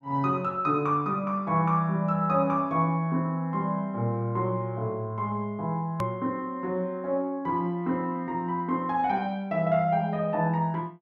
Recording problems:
click at an edit; at 6 s

